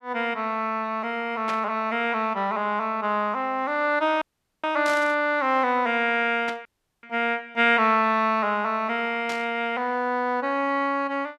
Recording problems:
burst of static; 4 times, first at 1.5 s; peak -5 dB vs average level
audio cutting out; at 4 s and at 6.5 s

